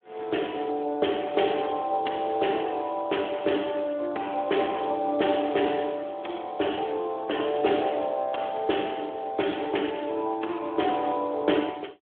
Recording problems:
telephone audio; 260 Hz to 3.5 kHz, Speex

